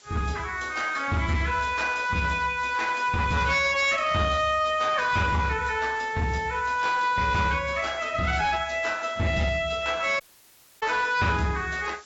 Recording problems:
codec artefacts; AAC, log-spectral distance 6 dB, nothing above 7.6 kHz
distorted audio; hard clipping, signal-to-distortion ratio 11 dB
background hiss; SNR 26 dB
audio cutting out; at 10 s for 0.5 s

